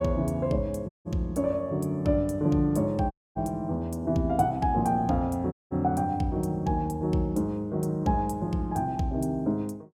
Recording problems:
dropout; at 1 s, at 3 s and at 5.5 s

